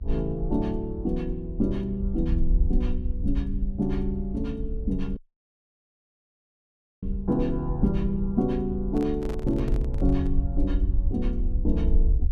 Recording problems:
mains hum; 60 Hz, harmonics up to 540 Hz, SNR 23 dB
rumble; below 56 Hz, SNR 2 dB
dropout; at 5 s for 2 s
microphone handling noise; from 9 to 10 s; peak -6 dB vs average level

